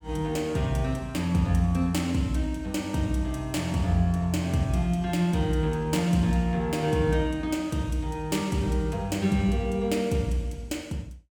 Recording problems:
none

